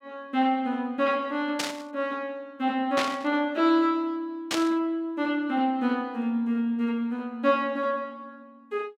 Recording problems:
static burst; at 1.5 s, at 3 s and at 4.5 s; peak +2 dB vs average level

